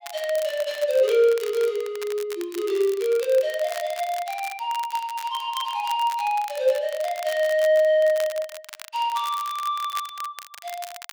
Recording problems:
crackle; vinyl, SNR 16 dB

